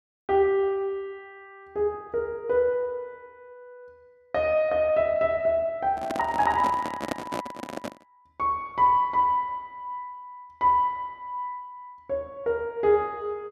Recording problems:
handling noise; from 6 to 8 s; peak 0 dB vs average level

